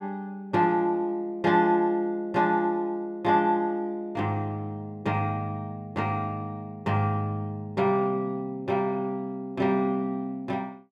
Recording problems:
none

